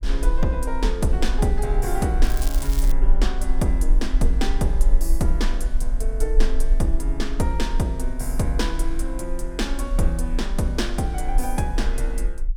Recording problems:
low-frequency rumble; below 38 Hz, strongest tone 20 Hz, SNR 0 dB
crackling; at 2 s; loose cable, SNR 10 dB

